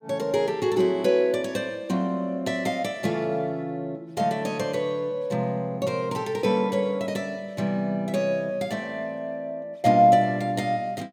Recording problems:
none

